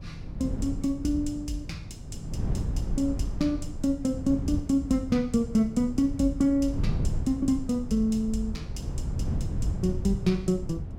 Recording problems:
low-frequency rumble; below 70 Hz, SNR 15 dB
wind on the microphone; below 150 Hz, SNR 8 dB

